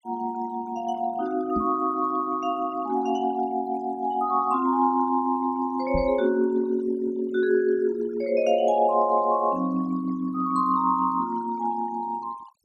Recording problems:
denoising artefacts; signal-to-artefact ratio 22 dB
microphone thump; at 1.5 s and at 6 s; peak -2 dB vs average level

